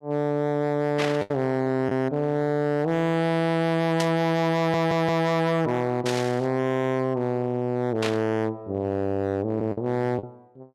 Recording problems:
distorted audio; hard clipping, signal-to-distortion ratio 7 dB
packet loss; 2% of the sound replaced, filled with the last packet
static burst; 4 times, first at 1 s; peak -1 dB vs average level
audio stuttering; at 4.5 s

